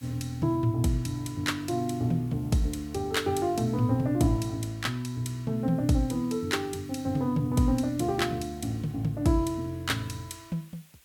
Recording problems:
hiss; slope +1 dB per octave, SNR 29 dB

